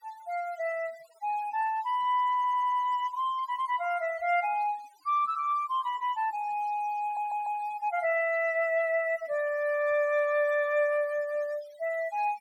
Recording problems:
noise reduction artefacts; signal-to-artefact ratio 24 dB
audio stuttering; at 2.5 s and at 7 s

